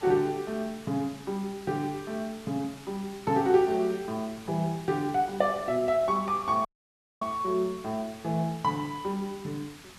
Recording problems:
background hiss; SNR 19 dB
dropout; at 6.5 s for 0.5 s

